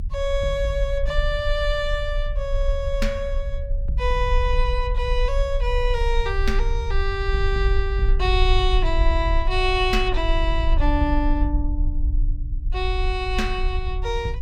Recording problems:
low-frequency rumble; below 52 Hz, strongest tone 30 Hz, SNR 1 dB

